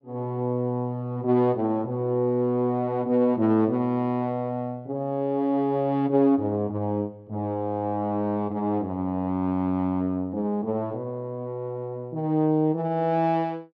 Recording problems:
none

